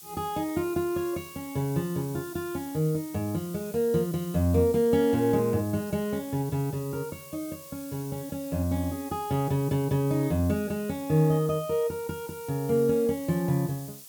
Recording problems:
hiss; SNR 16 dB

